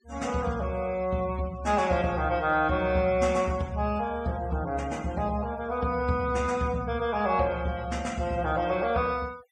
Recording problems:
noise reduction artefacts; signal-to-artefact ratio 22 dB

